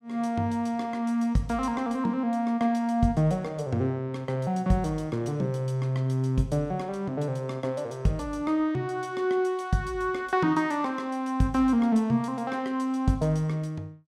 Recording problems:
none

